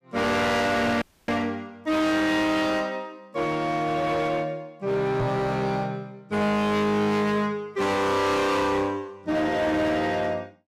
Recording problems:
distorted audio; hard clipping, uneven, signal-to-distortion ratio 7 dB
audio cutting out; at 1 s
microphone thump; at 5 s; peak +1 dB vs average level

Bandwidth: 15 kHz